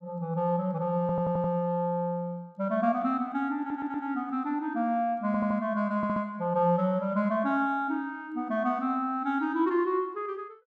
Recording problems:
stutter; 4 times, first at 1 s

